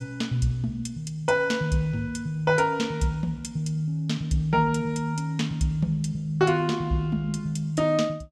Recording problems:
none

